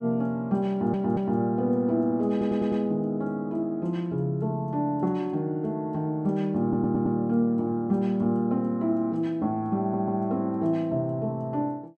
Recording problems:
stutter; 4 times, first at 0.5 s

